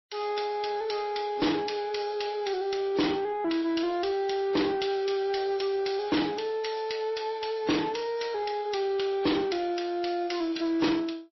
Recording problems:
codec artefacts; MP3, log-spectral distance 4 dB, nothing above 5.7 kHz
distortion; soft clipping, signal-to-distortion ratio 6 dB

